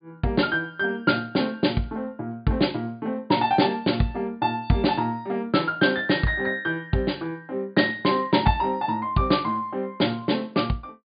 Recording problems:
low-pass filter; nothing above 4.8 kHz

